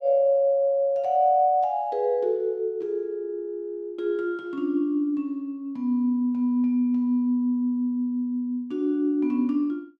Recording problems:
none

